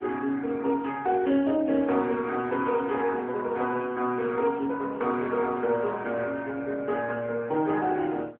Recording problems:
telephone audio; 170 Hz to 3.4 kHz, AMR-NB

